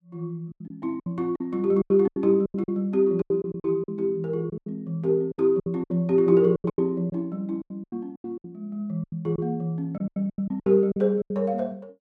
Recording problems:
packet loss; 16% of the sound replaced, filled with silence

